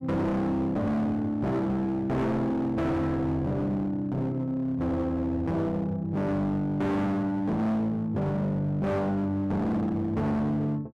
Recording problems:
distortion; hard clipping, uneven, signal-to-distortion ratio 7 dB

